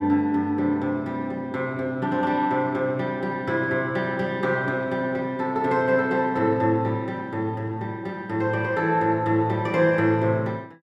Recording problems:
none

